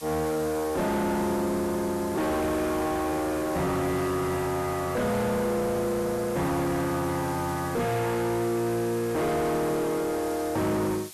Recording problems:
distorted audio; soft clipping, signal-to-distortion ratio 6 dB
background hiss; slope +2 dB per octave, SNR 15 dB

